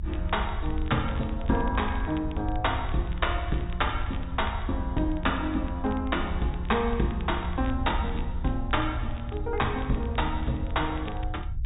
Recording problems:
treble cut off; nothing above 4 kHz
low-frequency rumble; below 76 Hz, SNR 5 dB
crackling; vinyl, SNR 21 dB

